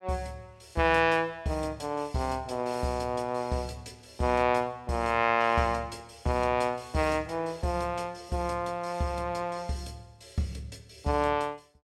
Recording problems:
none

